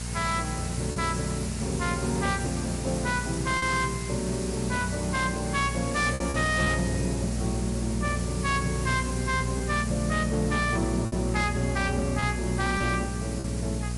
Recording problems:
lossy codec; MP3, log-spectral distance 11 dB, nothing above 11 kHz
distortion; hard clipping, signal-to-distortion ratio 11 dB
hum; 60 Hz, harmonics up to 660 Hz, SNR 4 dB
hiss; SNR 9 dB
packet loss; 3% of the sound replaced, filled with repeated pitch periods

